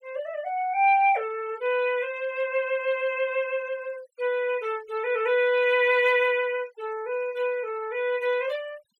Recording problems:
noise reduction artefacts; signal-to-artefact ratio 24 dB

